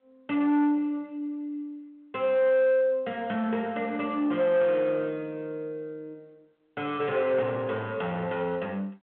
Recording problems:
telephone audio; 190 Hz to 3.8 kHz, G.726
distortion; soft clipping, signal-to-distortion ratio 12 dB

